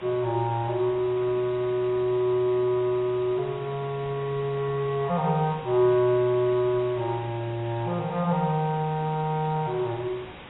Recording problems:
codec artefacts; AAC, log-spectral distance 7 dB, nothing above 10.7 kHz
hiss; SNR 17 dB

